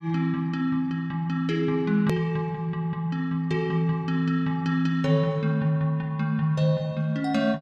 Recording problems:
edit click; at 2 s

